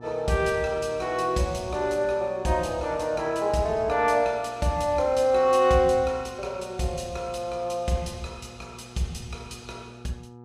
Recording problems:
electrical hum; 60 Hz, harmonics up to 1.3 kHz, SNR 22 dB

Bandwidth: 14.5 kHz